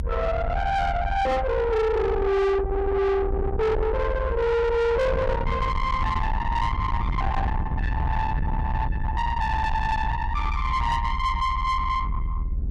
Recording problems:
distorted audio; soft clipping, signal-to-distortion ratio 8 dB
rumble; below 430 Hz, SNR 4 dB

